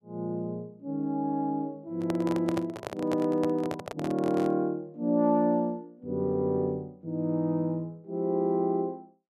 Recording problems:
microphone handling noise; from 2 to 4.5 s; peak -1 dB vs average level

